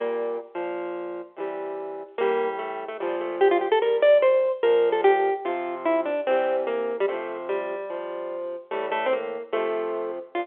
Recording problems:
telephone audio; 320 Hz to 3.5 kHz, G.711

